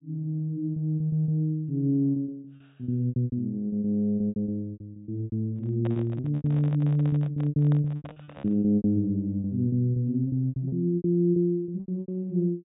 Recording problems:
treble cut off; nothing above 4 kHz
packet loss; 18% of the sound replaced, filled with repeated pitch periods
handling noise; from 5.5 to 8.5 s; peak -9 dB vs average level

